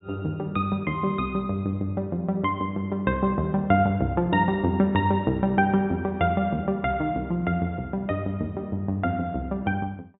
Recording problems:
treble cut off; nothing above 4 kHz

